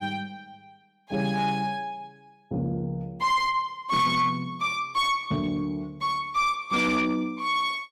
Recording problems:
distorted audio; soft clipping, signal-to-distortion ratio 11 dB

